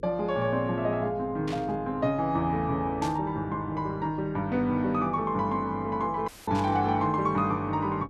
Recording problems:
hum; 50 Hz, harmonics up to 500 Hz, SNR 21 dB
static burst; at 1.5 s, at 3 s and at 6.5 s; peak -8 dB vs average level
dropout; at 6.5 s; filled with static

